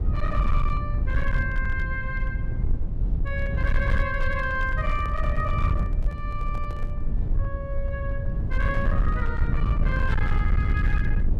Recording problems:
distortion; hard clipping, signal-to-distortion ratio 12 dB
low-frequency rumble; below 82 Hz, SNR -4 dB
handling noise; from 4.5 to 7 s; peak -8 dB vs average level

